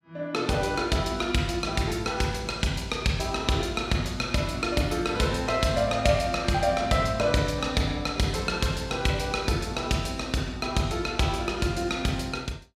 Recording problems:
none

